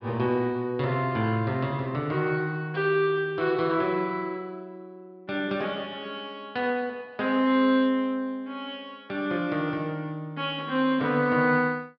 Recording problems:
low-pass filter; nothing above 5.5 kHz

